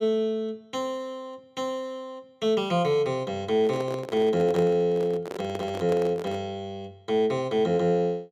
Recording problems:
handling noise; from 3.5 to 6.5 s; peak -3 dB vs average level

